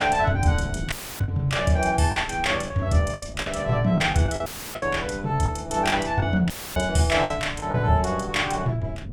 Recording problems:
wind noise; below 170 Hz, SNR 14 dB
packet loss; 7% of the sound replaced, filled with the last packet
dropout; at 1 s, at 4.5 s and at 6.5 s; filled with static

